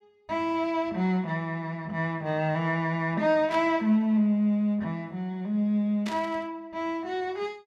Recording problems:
static burst; at 3.5 s and at 6 s; peak -7 dB vs average level

